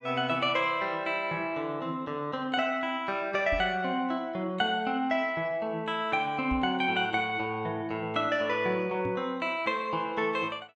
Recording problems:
microphone bump; at 3.5 s, at 6.5 s and at 9 s; peak -4 dB vs average level

